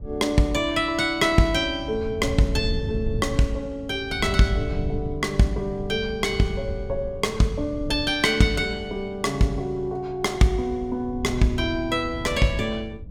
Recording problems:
wind noise; below 120 Hz, SNR 11 dB

